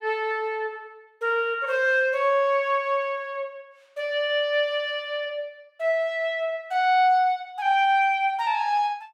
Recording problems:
none

